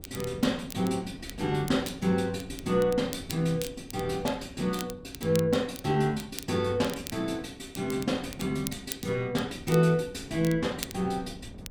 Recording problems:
wind noise; below 270 Hz, SNR 18 dB
crackling; vinyl, SNR 14 dB

